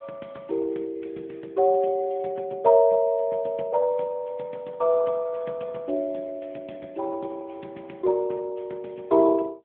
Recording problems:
telephone audio; 170 Hz to 3.8 kHz, AMR-NB

